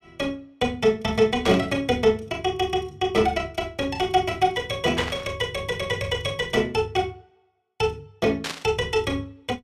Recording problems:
burst of static; at 1.5 s, at 5 s and at 8.5 s; peak -1 dB vs average level

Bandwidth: 14.5 kHz